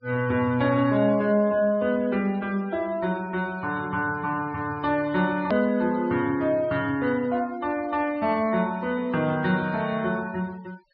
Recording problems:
treble missing; nothing above 5.5 kHz
denoising artefacts; signal-to-artefact ratio 23 dB
edit click; at 5.5 s

